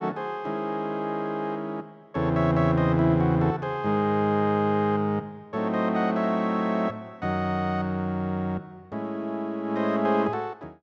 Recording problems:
none

